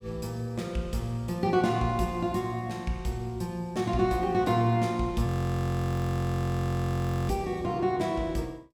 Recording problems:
frozen audio; at 5.5 s for 2 s

